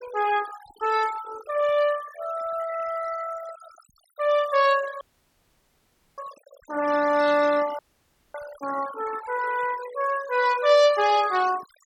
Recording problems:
denoising artefacts; signal-to-artefact ratio 15 dB
dropout; at 5 s for 1 s and at 8 s for 0.5 s

